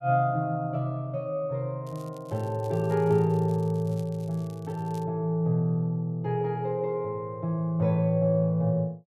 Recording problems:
crackling; from 2 to 5 s; loose cable, SNR 28 dB

